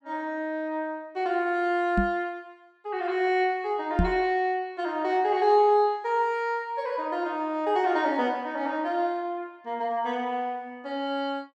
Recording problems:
knock on the microphone; at 2 s and at 4 s; peak +6 dB vs average level

